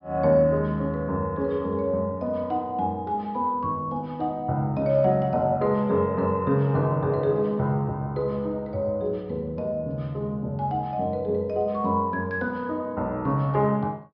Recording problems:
treble cut off; nothing above 5.5 kHz

